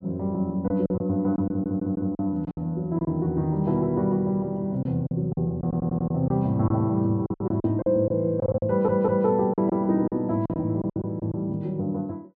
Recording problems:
lost packets; 10% of the sound replaced, filled with silence
stutter; at 1.5 s, at 5.5 s and at 8.5 s

